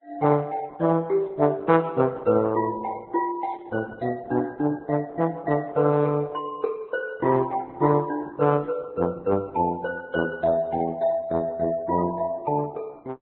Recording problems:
lossy codec; Opus, then Vorbis, log-spectral distance 2 dB, nothing above 4 kHz

